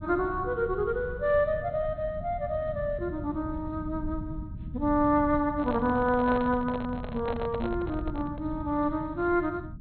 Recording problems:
treble cut off; nothing above 4.2 kHz
low-frequency rumble; below 150 Hz, SNR 11 dB
microphone handling noise; from 5.5 to 8.5 s; peak -3 dB vs average level

